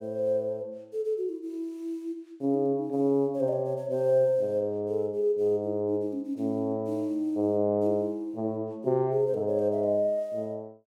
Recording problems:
none

